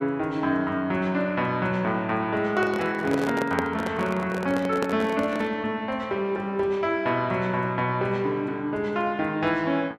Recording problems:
handling noise; from 2.5 to 5.5 s; peak +1 dB vs average level

